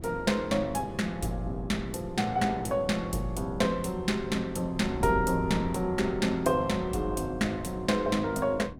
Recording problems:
wind noise; below 250 Hz, SNR 12 dB

